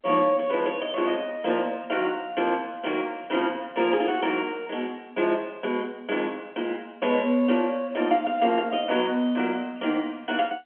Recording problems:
telephone audio; 260 Hz to 3.3 kHz, G.711

